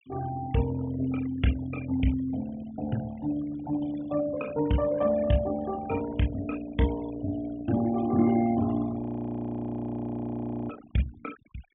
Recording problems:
low-pass filter; nothing above 3.4 kHz
noise reduction artefacts; signal-to-artefact ratio 17 dB
audio freezing; at 9 s for 1.5 s

